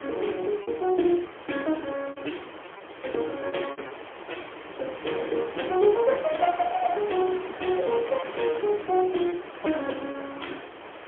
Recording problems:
telephone audio; 280 Hz to 3.2 kHz, AMR-NB, then MP3
wind noise; below 2 kHz, SNR 12 dB
lost packets; 8% of the sound replaced, filled with repeated pitch periods

